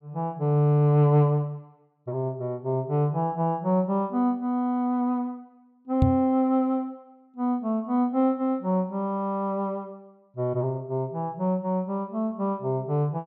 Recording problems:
microphone thump; at 6 s; peak +7 dB vs average level

